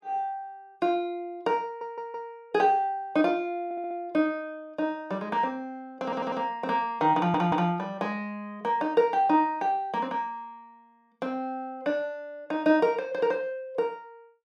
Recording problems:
audio stuttering; 4 times, first at 1.5 s

